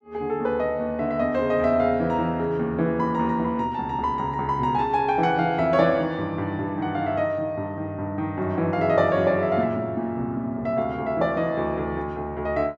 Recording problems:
none

